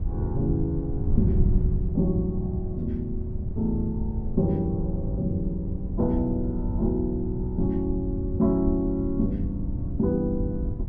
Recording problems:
wind on the microphone; below 110 Hz, SNR 3 dB

